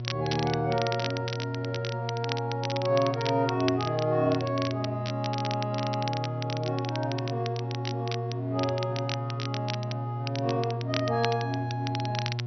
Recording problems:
treble missing; nothing above 5.8 kHz
hum; 60 Hz, harmonics up to 720 Hz, SNR 3 dB
crackling; vinyl, SNR 8 dB

